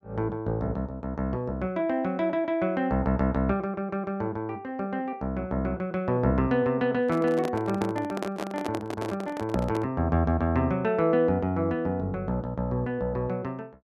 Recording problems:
handling noise; from 7 to 10 s; peak -1 dB vs average level

